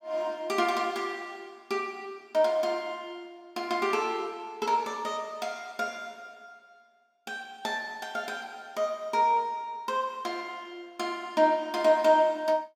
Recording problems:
none

